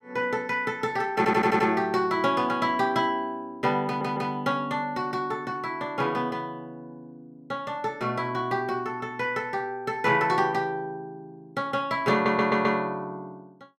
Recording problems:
audio stuttering; at 1 s, at 4 s and at 12 s

